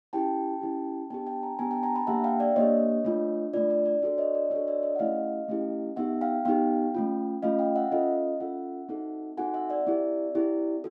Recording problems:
none

